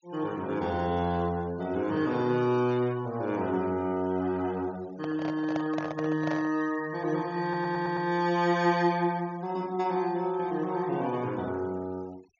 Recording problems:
low-pass filter; nothing above 6.9 kHz
denoising artefacts; signal-to-artefact ratio 24 dB
microphone handling noise; from 5 to 6.5 s; peak -2 dB vs average level
audio stuttering; at 7.5 s

